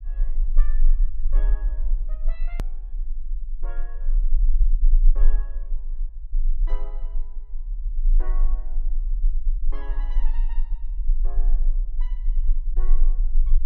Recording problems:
low-frequency rumble; below 32 Hz, strongest tone 20 Hz, SNR -21 dB
click at an edit; at 2.5 s

